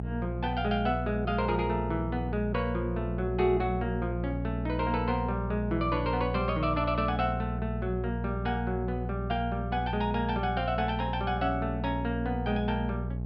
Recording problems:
hum; 60 Hz, harmonics up to 660 Hz, SNR 3 dB

